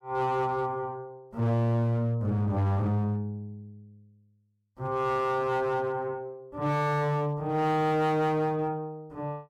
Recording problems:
distorted audio; hard clipping, signal-to-distortion ratio 11 dB

